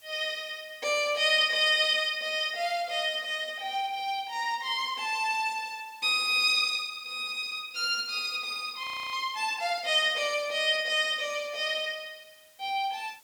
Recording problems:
hiss; slope +1 dB per octave, SNR 29 dB
audio freezing; at 9 s

